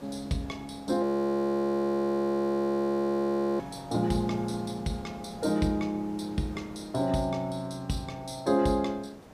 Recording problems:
background hiss; slope -7 dB per octave, SNR 20 dB
audio freezing; at 1 s for 2.5 s

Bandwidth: 15 kHz